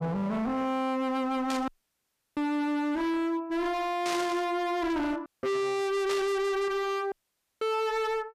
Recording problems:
distortion; hard clipping, signal-to-distortion ratio 6 dB
static burst; at 1.5 s, at 4 s and at 6 s; peak -2 dB vs average level
dropout; at 1.5 s for 0.5 s, at 5.5 s and at 7 s

